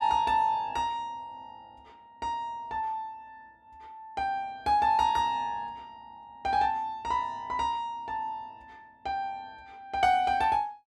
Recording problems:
none

